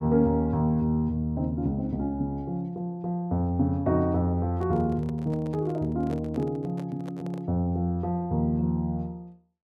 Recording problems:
handling noise; from 4.5 to 7.5 s; peak -11 dB vs average level

